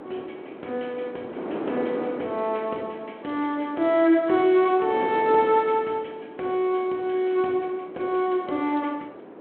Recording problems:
phone line; 260 Hz to 3.3 kHz, G.726
wind on the microphone; below 640 Hz, SNR 13 dB

